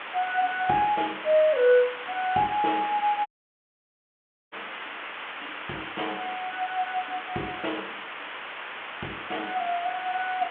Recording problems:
phone line; 220 Hz to 3.4 kHz, G.726
hiss; SNR 9 dB
audio cutting out; at 3.5 s for 1.5 s

